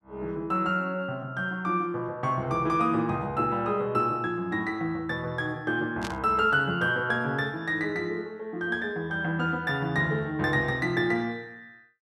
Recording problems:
burst of static; at 6 s; peak -5 dB vs average level

